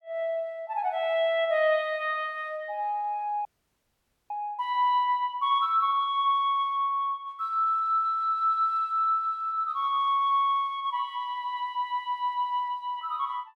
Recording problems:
frozen audio; at 3.5 s for 1 s

